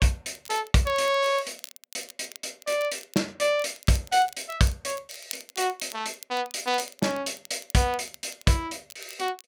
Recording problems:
crackle; vinyl, SNR 18 dB

